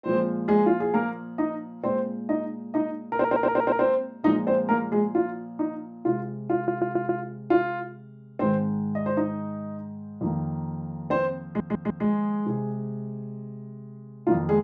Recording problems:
stutter; at 3 s, at 6.5 s and at 11 s

